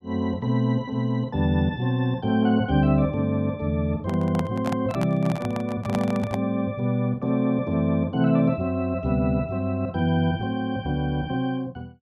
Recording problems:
microphone handling noise; from 4 to 6.5 s; peak -2 dB vs average level

